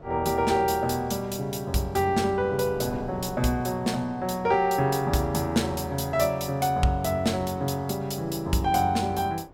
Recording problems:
wind on the microphone; below 570 Hz, SNR 21 dB

